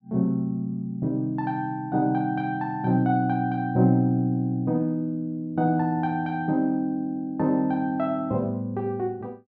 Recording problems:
none

